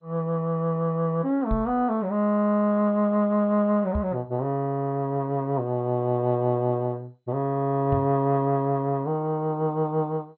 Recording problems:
lossy codec; MP2, log-spectral distance 2 dB, nothing above 3.9 kHz
knock on the microphone; at 1.5 s, at 4 s and at 8 s; peak 0 dB vs average level

